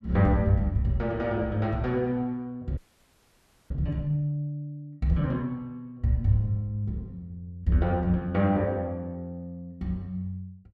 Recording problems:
audio freezing; at 3 s for 1 s

